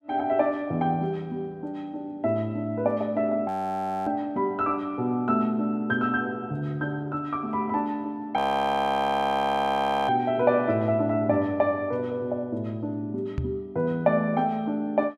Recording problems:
audio freezing; at 3.5 s for 0.5 s and at 8.5 s for 1.5 s
knock on the microphone; at 13 s; peak +1 dB vs average level

